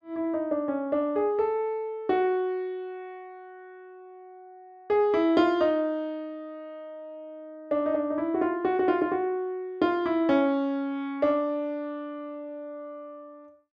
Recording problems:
none

